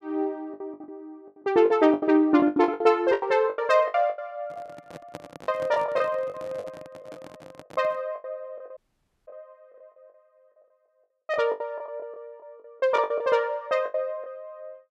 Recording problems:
packet loss; 15% of the sound replaced, filled with the last packet
microphone handling noise; from 4.5 to 8 s; peak -9 dB vs average level
audio cutting out; at 9 s for 0.5 s

